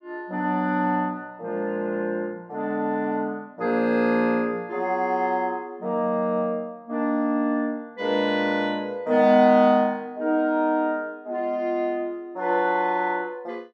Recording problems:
none

